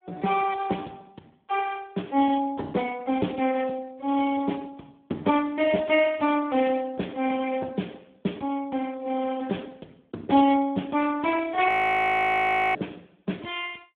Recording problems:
phone line; 150 Hz to 3.5 kHz, Speex
audio freezing; at 12 s for 1 s

